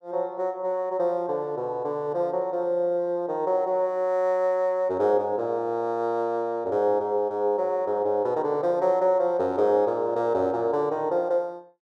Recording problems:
none

